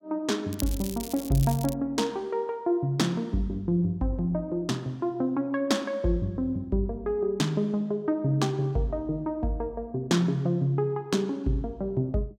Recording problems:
crackle; from 0.5 to 2 s; loose cable, SNR 11 dB

